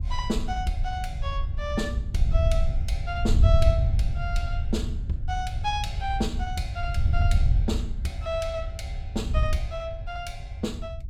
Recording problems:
wind noise; below 88 Hz, SNR -4 dB

